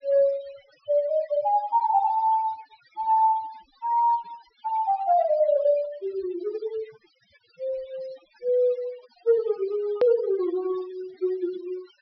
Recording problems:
treble cut off; nothing above 5.5 kHz
denoising artefacts; signal-to-artefact ratio 23 dB
hard cut with a click; at 10 s

